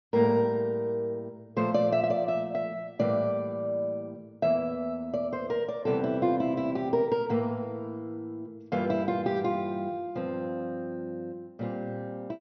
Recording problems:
treble cut off; nothing above 6.1 kHz

